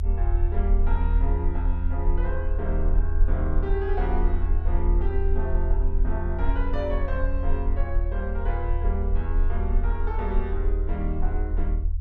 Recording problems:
rumble; below 56 Hz, SNR -6 dB

